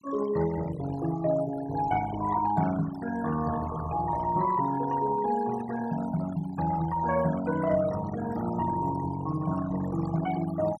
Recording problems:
denoising artefacts; signal-to-artefact ratio 13 dB

